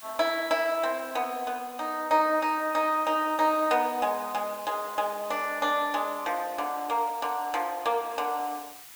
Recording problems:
hiss; slope +2 dB per octave, SNR 17 dB

